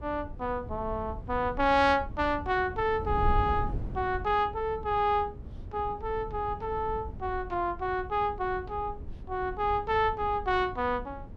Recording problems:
wind on the microphone; below 110 Hz, SNR 11 dB

